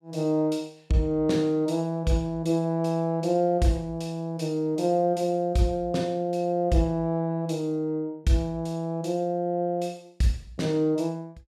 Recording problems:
none

